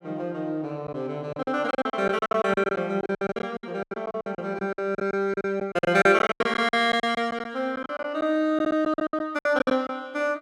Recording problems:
lost packets; 18% of the sound replaced, filled with silence

